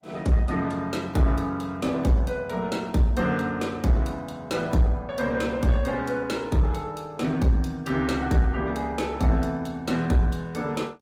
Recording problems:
codec artefacts; Opus, log-spectral distance 2 dB, nothing above 19.5 kHz
distortion; soft clipping, signal-to-distortion ratio 10 dB

